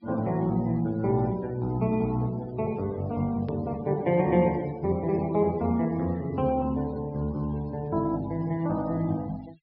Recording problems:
low-pass filter; nothing above 5.5 kHz
noise reduction artefacts; signal-to-artefact ratio 25 dB
click at an edit; at 3.5 s

